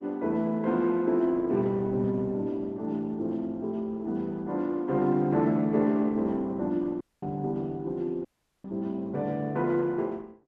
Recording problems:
lossy codec; Opus, log-spectral distance 2 dB
dropout; at 7 s and at 8.5 s

